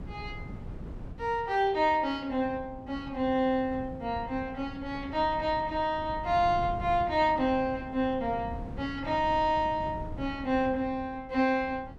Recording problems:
wind noise; below 210 Hz, SNR 14 dB

